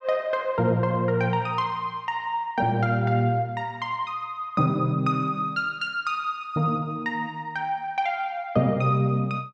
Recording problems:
none

